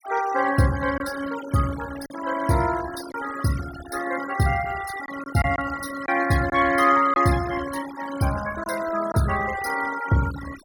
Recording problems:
noise reduction artefacts; signal-to-artefact ratio 13 dB
lost packets; 2% of the sound replaced, filled with silence

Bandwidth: 17.5 kHz